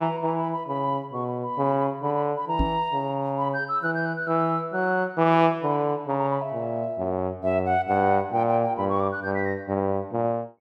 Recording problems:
microphone thump; at 2.5 s; peak +3 dB vs average level

